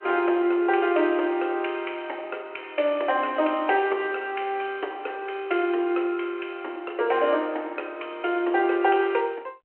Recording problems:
telephone audio; 280 Hz to 3.2 kHz, G.726

